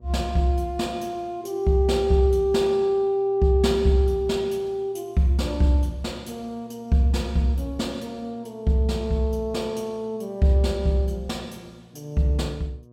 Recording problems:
hum; 60 Hz, harmonics up to 1.1 kHz, SNR 27 dB

